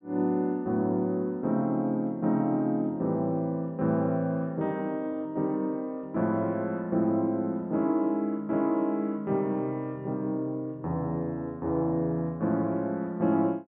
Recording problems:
treble cut off; nothing above 4 kHz

